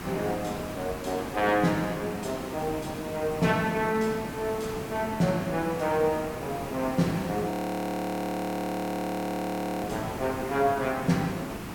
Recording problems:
hiss; slope -6 dB per octave, SNR 8 dB
frozen audio; at 7.5 s for 2.5 s

